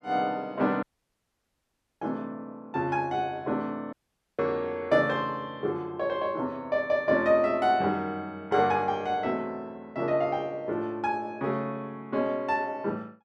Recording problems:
audio cutting out; at 1 s for 1 s and at 4 s

